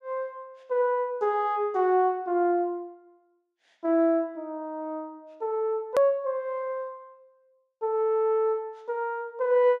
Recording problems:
hard cut with a click; at 6 s

